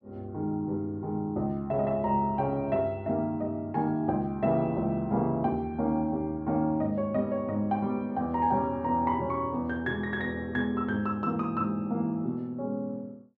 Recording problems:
none

